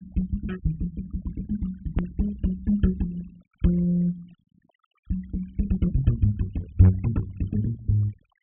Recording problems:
low-pass filter; nothing above 3.3 kHz
denoising artefacts; signal-to-artefact ratio 24 dB
hard cut with a click; at 2 s

